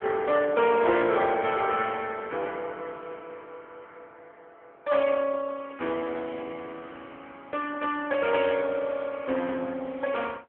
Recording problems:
telephone audio; 300 Hz to 3.3 kHz, AMR-NB

